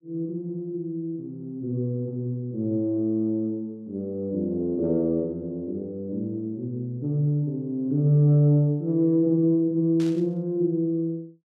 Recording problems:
burst of static; at 10 s; peak -13 dB vs average level

